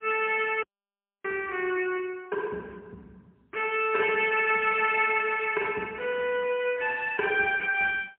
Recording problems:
phone line; 220 Hz to 3.5 kHz, AMR-NB, then MP3
audio cutting out; at 0.5 s for 0.5 s

